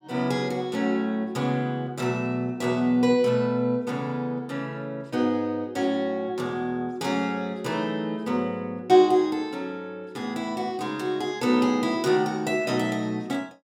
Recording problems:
none

